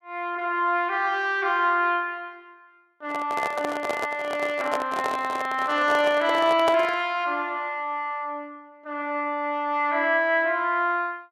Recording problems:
microphone handling noise; from 3 to 7 s; peak +1 dB vs average level

